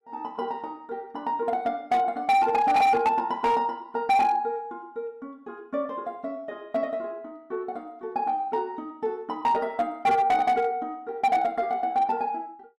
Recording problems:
distorted audio; hard clipping, signal-to-distortion ratio 11 dB

